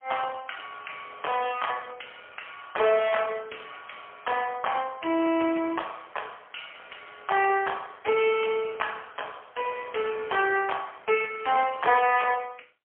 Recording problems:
telephone audio; 280 Hz to 3.3 kHz, AMR-NB, then MP3

